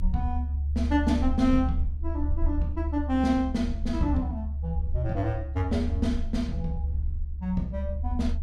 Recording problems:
low-frequency rumble; below 72 Hz, strongest tone 72 Hz, SNR 2 dB

